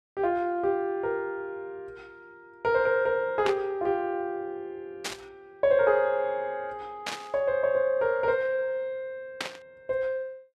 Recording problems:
static burst; 4 times, first at 3.5 s; peak 0 dB vs average level

